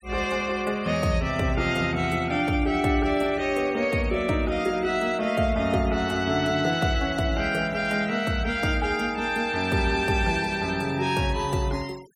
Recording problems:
noise reduction artefacts; signal-to-artefact ratio 23 dB

